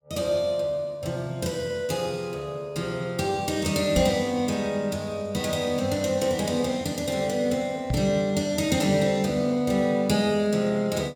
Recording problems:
knock on the microphone; at 4 s and at 8 s; peak +3 dB vs average level

